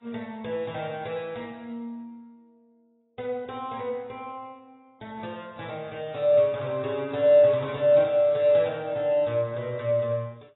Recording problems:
codec artefacts; AAC, log-spectral distance 2 dB, nothing above 3.8 kHz

